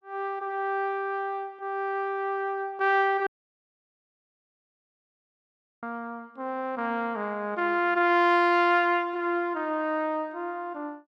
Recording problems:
dropout; at 3.5 s for 2.5 s

